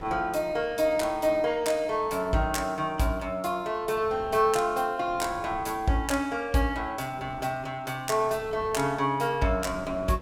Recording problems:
wind on the microphone; below 570 Hz, SNR 20 dB

